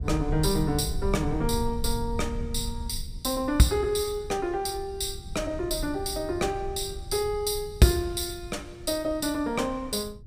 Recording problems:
low-frequency rumble; below 88 Hz, SNR 10 dB

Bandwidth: 15.5 kHz